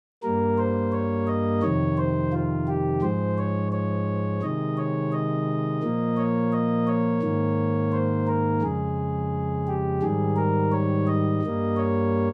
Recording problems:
none

